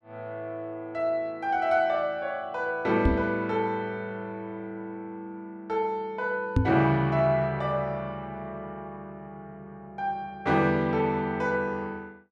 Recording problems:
microphone thump; at 3 s and at 6.5 s; peak +8 dB vs average level

